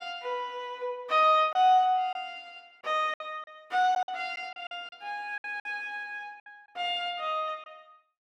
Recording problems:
packet loss; 7% of the sound replaced, filled with silence

